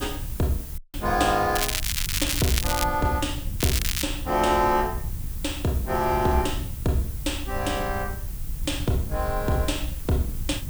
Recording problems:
hiss; slope -1 dB per octave, SNR 13 dB
wind noise; below 90 Hz, SNR 8 dB
audio cutting out; at 1 s
crackle; from 1.5 to 3 s and at 3.5 s; loose cable, SNR 1 dB

